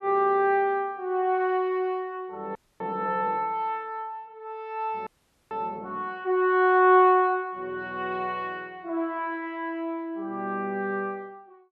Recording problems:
audio freezing; at 2.5 s and at 5 s

